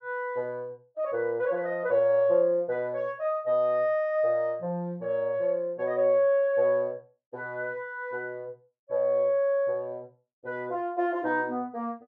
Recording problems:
none

